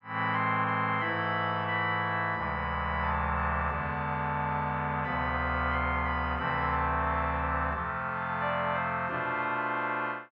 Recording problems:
none

